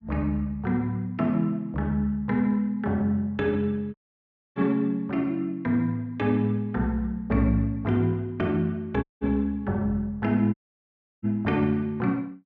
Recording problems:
dropout; at 4 s for 0.5 s, at 9 s and at 11 s for 0.5 s

